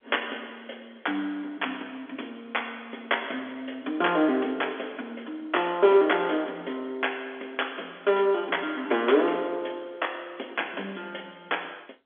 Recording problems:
phone line; 240 Hz to 3.5 kHz, G.711

